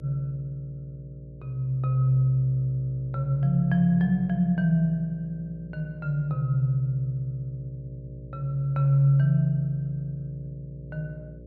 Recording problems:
electrical hum; 60 Hz, harmonics up to 600 Hz, SNR 20 dB

